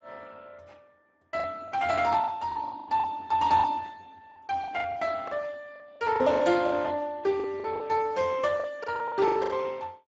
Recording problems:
lossy codec; Speex, log-spectral distance 4 dB, nothing above 7.3 kHz
lost packets; 13% of the sound replaced, filled with the last packet

